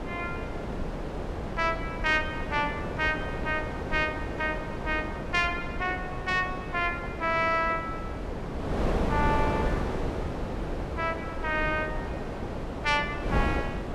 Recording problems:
wind on the microphone; below 580 Hz, SNR 4 dB

